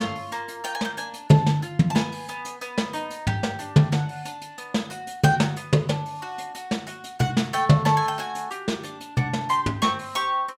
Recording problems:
none

